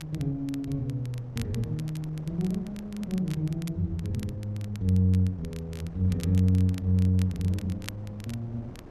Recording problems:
wind on the microphone; below 380 Hz, SNR 19 dB
crackling; vinyl, SNR 20 dB

